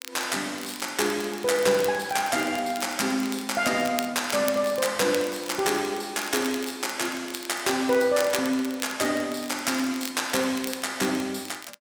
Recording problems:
crackling; vinyl, SNR 14 dB

